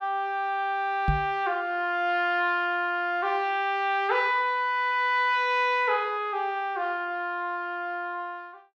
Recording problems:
microphone bump; at 1 s; peak +4 dB vs average level

